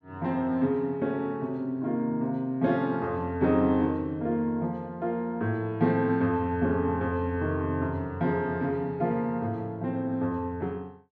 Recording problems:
none

